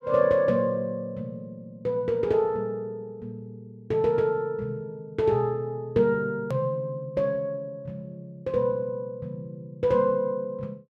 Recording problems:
hard cut with a click; at 6.5 s

